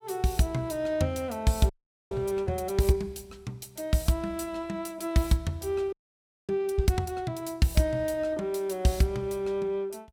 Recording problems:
audio freezing; at 1.5 s and at 6 s for 0.5 s

